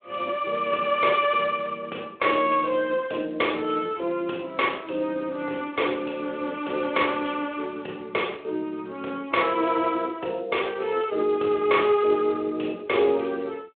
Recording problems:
telephone audio; 320 Hz to 3.5 kHz, Speex

